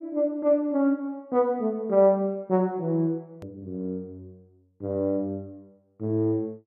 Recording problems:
click at an edit; at 3.5 s

